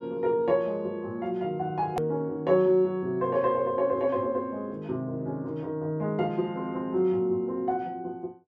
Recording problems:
click at an edit; at 2 s

